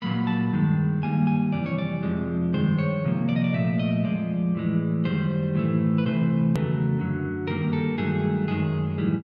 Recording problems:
edit click; at 6.5 s

